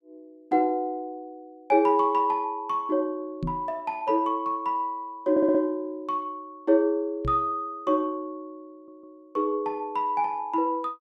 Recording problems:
microphone thump; at 3.5 s and at 7.5 s; peak -1 dB vs average level
stutter; at 5.5 s and at 8.5 s

